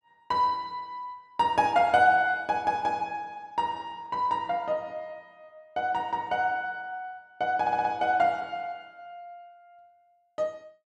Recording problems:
audio stuttering; at 7.5 s

